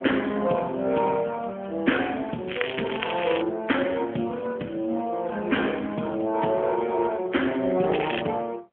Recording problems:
phone line; 170 Hz to 3.3 kHz, AMR-NB
crackling; at 2.5 s and at 8 s; loose cable, SNR 7 dB

